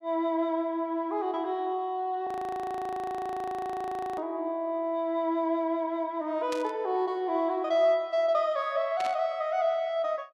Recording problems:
frozen audio; at 2.5 s for 2 s
burst of static; at 4 s, at 6.5 s and at 9 s; peak -5 dB vs average level

